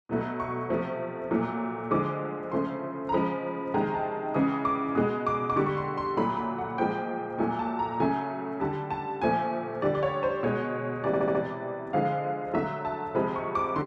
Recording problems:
stutter; at 11 s

